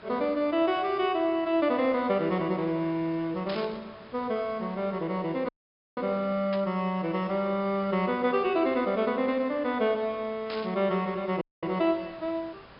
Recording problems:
low-pass filter; nothing above 5.5 kHz
background hiss; SNR 22 dB
static burst; at 3.5 s, at 6.5 s and at 10 s; peak -7 dB vs average level
audio cutting out; at 5.5 s and at 11 s

